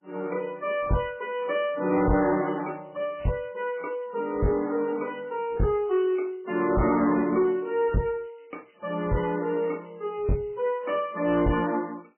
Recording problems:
codec artefacts; MP3, log-spectral distance 5 dB, nothing above 2.4 kHz
distorted audio; soft clipping, signal-to-distortion ratio 11 dB

